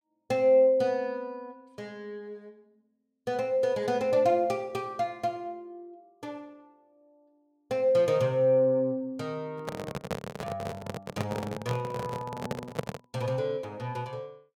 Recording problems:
handling noise; from 9.5 to 13 s; peak +1 dB vs average level

